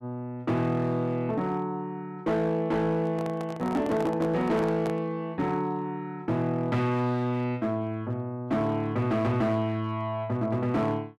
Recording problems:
distorted audio; hard clipping, signal-to-distortion ratio 12 dB
handling noise; from 3 to 5 s; peak -3 dB vs average level

